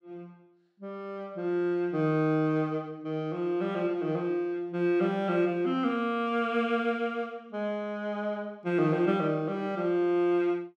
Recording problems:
none

